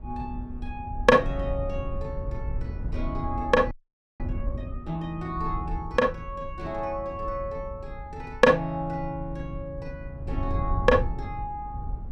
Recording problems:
wind on the microphone; below 90 Hz, SNR 8 dB
audio freezing; at 3.5 s

